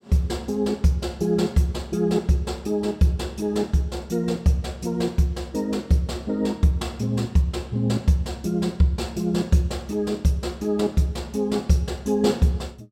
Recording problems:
none

